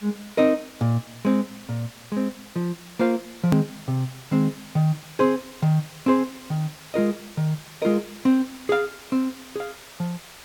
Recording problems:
hiss; slope -1 dB per octave, SNR 19 dB
hard cut with a click; at 3.5 s

